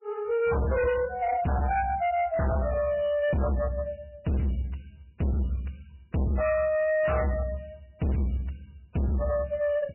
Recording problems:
lossy compression; MP3, log-spectral distance 5 dB, nothing above 2.5 kHz
distortion; hard clipping, uneven, signal-to-distortion ratio 6 dB

